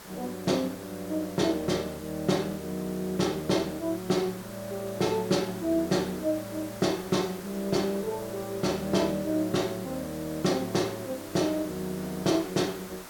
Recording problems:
background hiss; slope -3 dB per octave, SNR 14 dB

